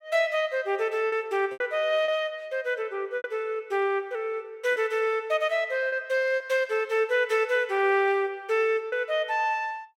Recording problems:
packet loss; 4% of the sound replaced, filled with repeated pitch periods

